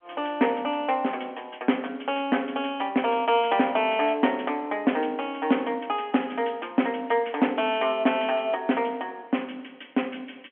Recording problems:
telephone audio; 170 Hz to 3.3 kHz, G.711

